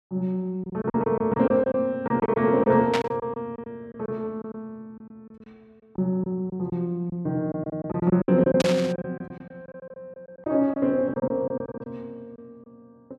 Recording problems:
packet loss; 12% of the sound replaced, filled with silence
static burst; at 3 s and at 8.5 s; peak +2 dB vs average level

